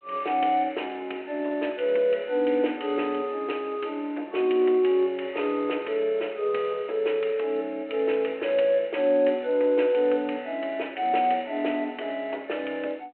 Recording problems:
telephone audio; 300 Hz to 3.2 kHz, G.726

